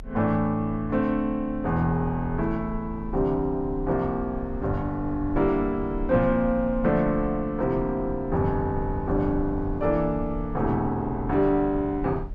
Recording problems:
rumble; below 62 Hz, strongest tone 32 Hz, SNR 13 dB

